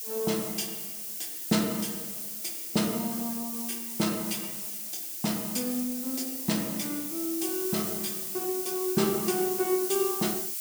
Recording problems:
background hiss; slope +7 dB per octave, SNR 2 dB

